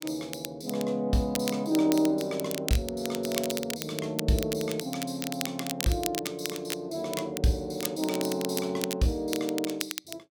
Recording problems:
crackling; vinyl, SNR 7 dB

